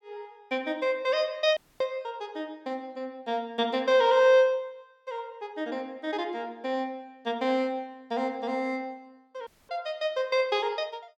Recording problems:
audio cutting out; at 1.5 s and at 9.5 s

